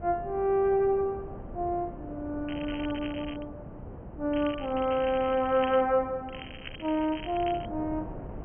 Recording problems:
low-pass filter; nothing above 3.2 kHz
wind on the microphone; below 450 Hz, SNR 15 dB
crackling; at 2.5 s, from 4.5 to 6 s and from 6.5 to 7.5 s; loose cable, SNR 15 dB

